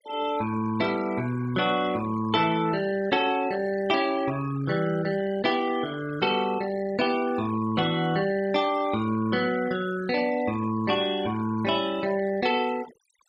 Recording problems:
denoising artefacts; signal-to-artefact ratio 17 dB

